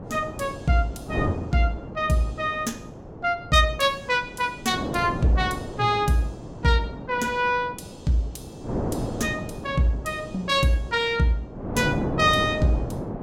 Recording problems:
wind noise; below 500 Hz, SNR 9 dB

